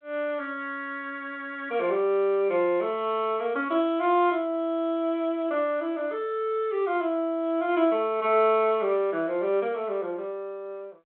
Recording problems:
phone line; 240 Hz to 3.6 kHz, G.726

